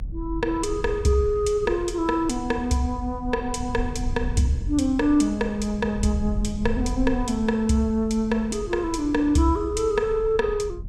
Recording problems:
rumble; below 80 Hz, SNR 11 dB

